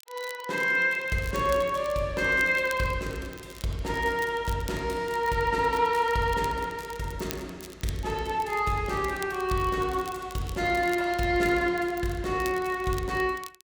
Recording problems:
crackling; vinyl, SNR 19 dB

